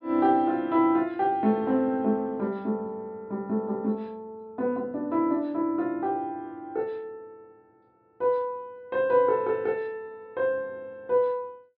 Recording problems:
treble missing; nothing above 5.5 kHz

